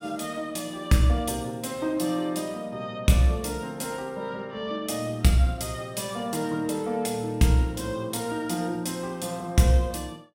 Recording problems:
none

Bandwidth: 16.5 kHz